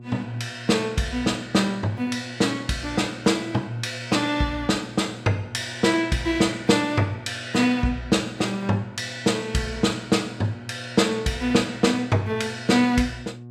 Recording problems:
hum; 60 Hz, harmonics up to 720 Hz, SNR 17 dB

